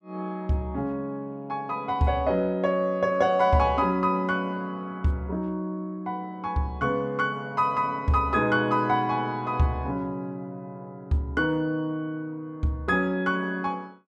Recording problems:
none

